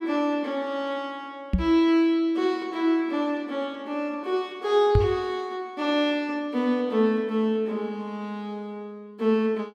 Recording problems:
knock on the microphone; at 1.5 s and at 5 s; peak +7 dB vs average level

